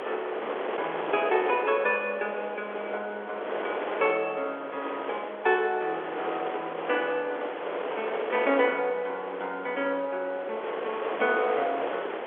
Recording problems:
telephone audio; 320 Hz to 3.5 kHz, G.711
wind on the microphone; below 1.2 kHz, SNR 5 dB

